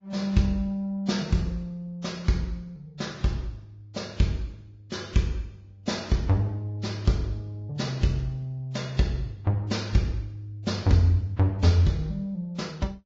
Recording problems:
codec artefacts; Vorbis, log-spectral distance 2 dB, nothing above 16.6 kHz

